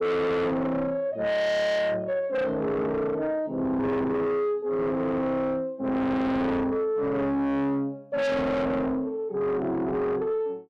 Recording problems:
distorted audio; soft clipping, signal-to-distortion ratio 6 dB

